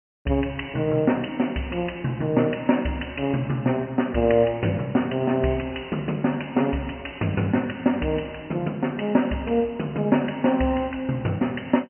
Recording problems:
low-pass filter; nothing above 3 kHz

